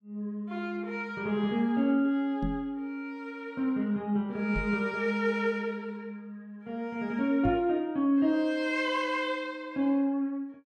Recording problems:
knock on the microphone; at 2.5 s, at 4.5 s and at 7.5 s; peak 0 dB vs average level

